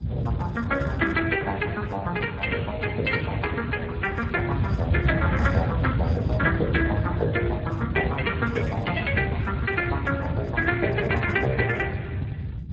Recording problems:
codec artefacts; MP3, then Speex, log-spectral distance 3 dB, nothing above 7.3 kHz
low-frequency rumble; below 150 Hz, SNR 4 dB

